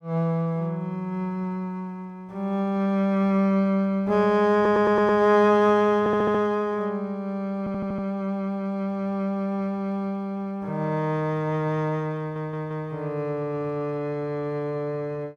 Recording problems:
audio stuttering; 4 times, first at 4.5 s

